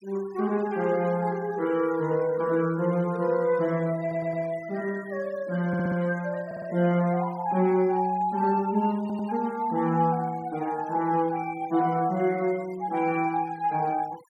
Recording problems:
denoising artefacts; signal-to-artefact ratio 24 dB
stutter; 4 times, first at 4 s

